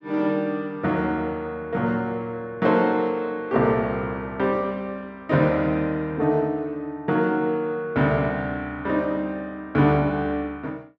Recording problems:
none

